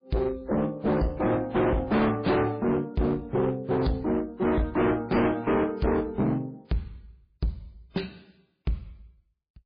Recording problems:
lossy compression; MP3, then AAC, log-spectral distance 2 dB, nothing above 4.1 kHz
distortion; hard clipping, uneven, signal-to-distortion ratio 5 dB

